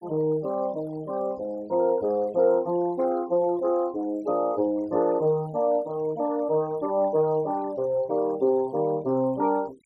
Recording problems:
noise reduction artefacts; signal-to-artefact ratio 26 dB

